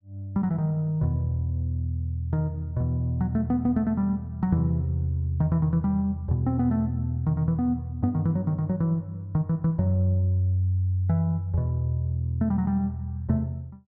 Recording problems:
none

